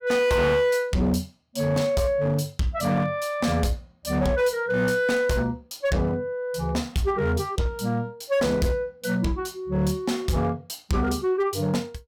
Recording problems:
distorted audio; hard clipping, uneven, signal-to-distortion ratio 10 dB

